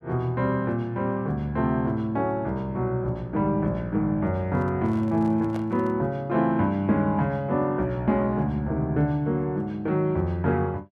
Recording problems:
microphone handling noise; from 4.5 to 6 s; peak -9 dB vs average level

